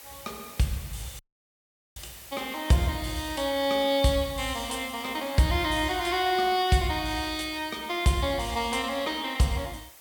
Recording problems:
background hiss; slope -1 dB per octave, SNR 18 dB
audio cutting out; at 1 s for 1 s

